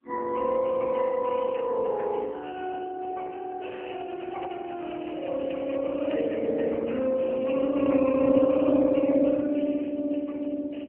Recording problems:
phone line; 170 Hz to 3.1 kHz, AMR-NB
crackling; from 4 to 6.5 s; loose cable, SNR 24 dB

